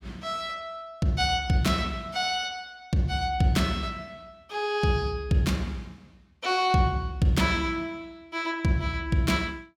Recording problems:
none

